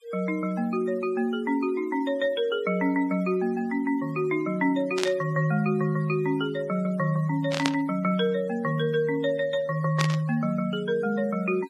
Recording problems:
denoising artefacts; signal-to-artefact ratio 23 dB
static burst; at 5 s, at 7.5 s and at 10 s; peak +3 dB vs average level

